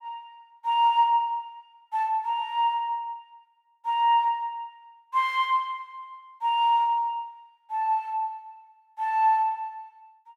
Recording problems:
none

